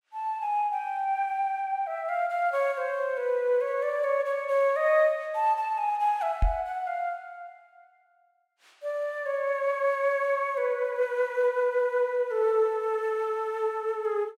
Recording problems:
microphone thump; at 6.5 s; peak +4 dB vs average level

